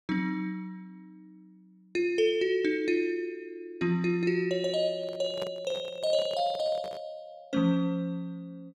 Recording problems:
handling noise; from 5 to 7 s; peak -6 dB vs average level

